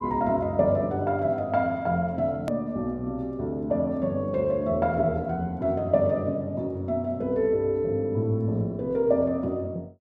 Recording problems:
click at an edit; at 2.5 s

